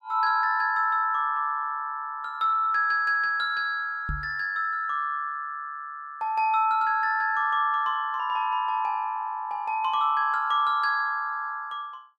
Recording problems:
microphone thump; at 4 s; peak -4 dB vs average level

